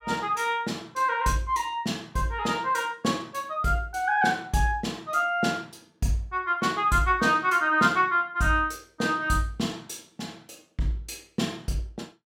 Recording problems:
none

